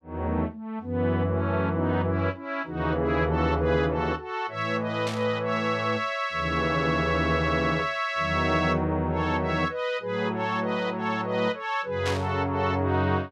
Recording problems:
static burst; at 5 s and at 12 s; peak -2 dB vs average level

